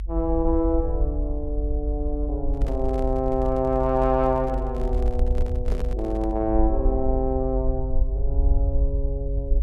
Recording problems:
rumble; below 56 Hz, SNR 1 dB
handling noise; from 2.5 to 6.5 s; peak -5 dB vs average level

